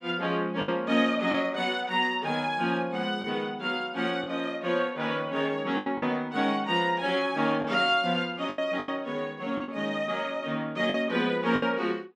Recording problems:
lost packets; 5% of the sound replaced, filled with the last packet

